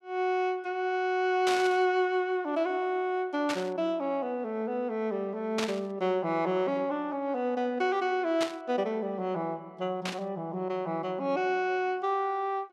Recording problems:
burst of static; 5 times, first at 1.5 s; peak +1 dB vs average level

